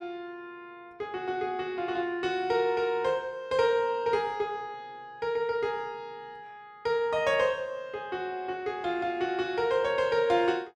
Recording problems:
none

